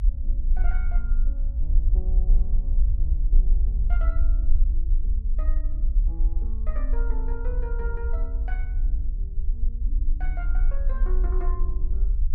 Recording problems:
low-frequency rumble; below 44 Hz, strongest tone 28 Hz, SNR -16 dB

